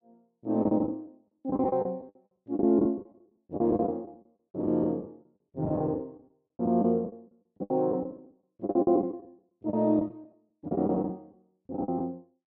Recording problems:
packet loss; 18% of the sound replaced, filled with the last packet

